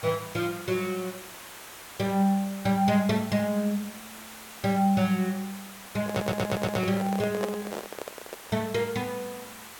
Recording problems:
background hiss; SNR 14 dB
microphone handling noise; from 6 to 8.5 s; peak +2 dB vs average level
stutter; at 6 s

